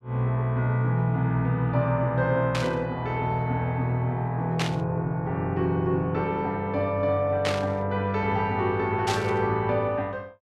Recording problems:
burst of static; 4 times, first at 2.5 s; peak +1 dB vs average level

